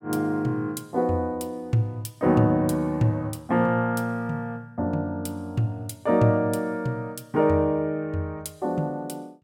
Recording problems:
none

